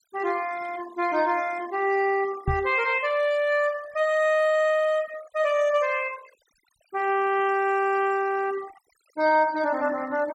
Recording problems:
denoising artefacts; signal-to-artefact ratio 21 dB
microphone thump; at 2.5 s; peak +1 dB vs average level

